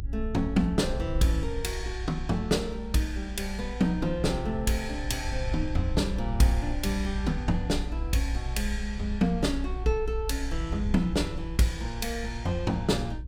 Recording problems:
rumble; below 58 Hz, SNR 6 dB

